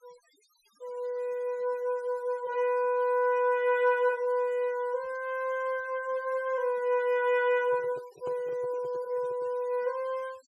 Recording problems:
denoising artefacts; signal-to-artefact ratio 27 dB
handling noise; from 7.5 to 9.5 s; peak -11 dB vs average level

